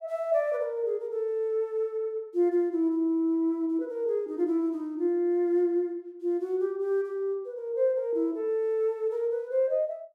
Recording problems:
none

